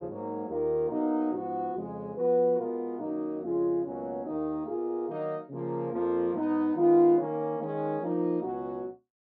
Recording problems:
none

